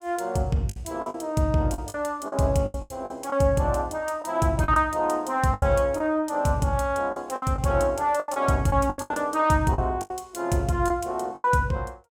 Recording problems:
lost packets; 11% of the sound replaced, filled with the last packet

